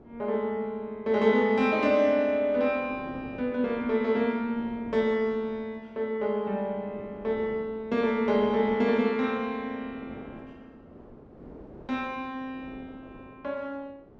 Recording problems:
wind noise; below 520 Hz, SNR 21 dB

